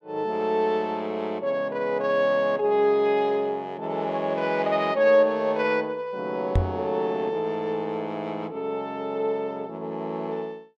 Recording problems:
microphone thump; at 6.5 s; peak +5 dB vs average level

